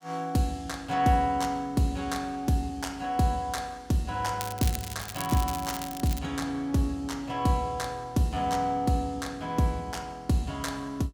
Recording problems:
crackle; from 4.5 to 6 s; loose cable, SNR 9 dB

